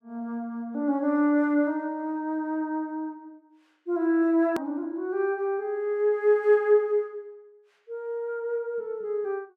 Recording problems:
edit click; at 4.5 s

